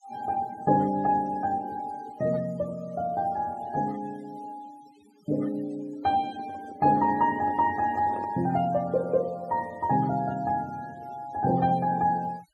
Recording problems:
denoising artefacts; signal-to-artefact ratio 22 dB
handling noise; from 6 to 8.5 s; peak -9 dB vs average level

